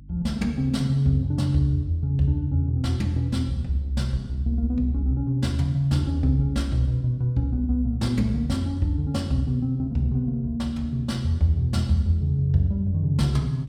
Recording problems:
electrical hum; 50 Hz, harmonics up to 300 Hz, SNR 22 dB

